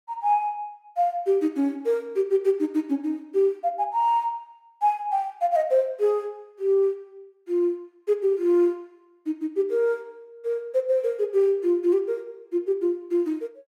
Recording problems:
none

